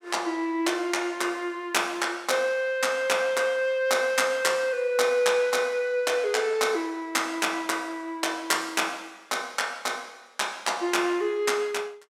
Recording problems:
none

